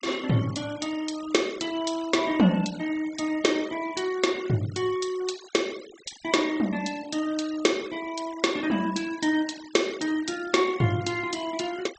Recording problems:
treble cut off; nothing above 8 kHz
denoising artefacts; signal-to-artefact ratio 17 dB

